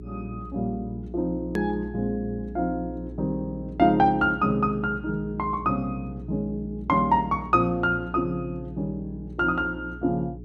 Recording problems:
mains hum; 60 Hz, harmonics up to 420 Hz, SNR 13 dB
click at an edit; at 1.5 s

